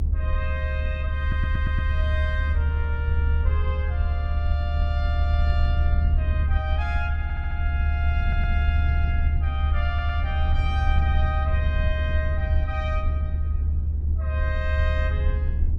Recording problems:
rumble; below 76 Hz, strongest tone 74 Hz, SNR -9 dB
audio stuttering; 4 times, first at 1 s

